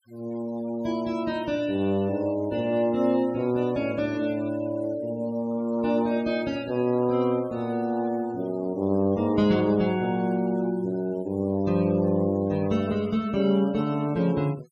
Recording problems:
denoising artefacts; signal-to-artefact ratio 23 dB

